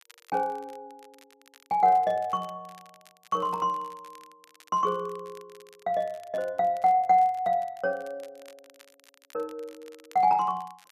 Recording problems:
crackling; vinyl, SNR 29 dB

